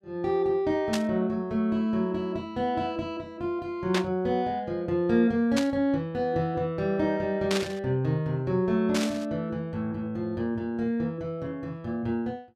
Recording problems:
burst of static; 5 times, first at 1 s; peak +2 dB vs average level

